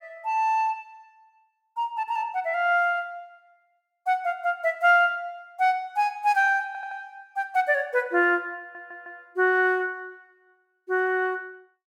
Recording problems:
audio stuttering; at 6.5 s and at 8.5 s

